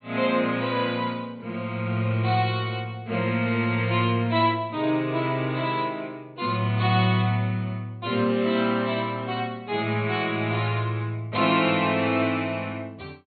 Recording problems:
treble missing; nothing above 4.5 kHz

